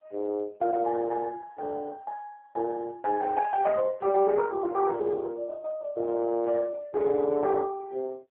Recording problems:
phone line; 300 Hz to 3.4 kHz, AMR-NB

